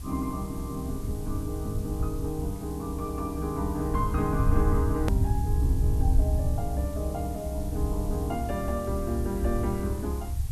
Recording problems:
background hiss; slope -1 dB per octave, SNR 16 dB
rumble; below 88 Hz, SNR -1 dB
edit click; at 5 s

